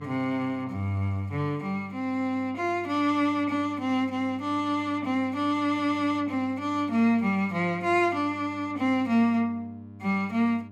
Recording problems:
hum; 50 Hz, harmonics up to 1 kHz, SNR 19 dB

